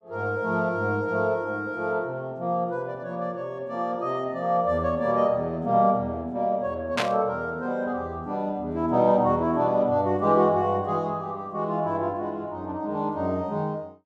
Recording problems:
static burst; at 7 s; peak +4 dB vs average level

